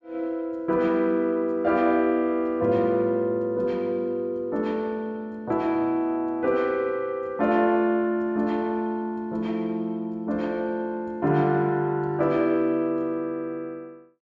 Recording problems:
none

